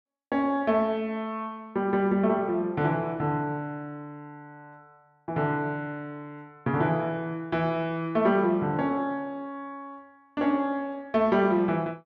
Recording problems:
none

